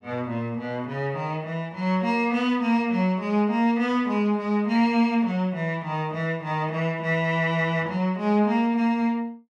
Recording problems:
none

